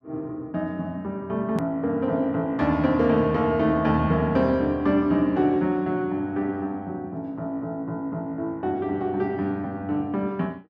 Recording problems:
hard cut with a click; at 1.5 s

